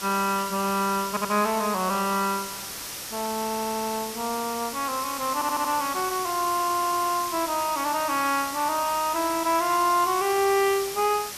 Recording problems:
background hiss; slope 0 dB per octave, SNR 8 dB
audio stuttering; 4 times, first at 1 s

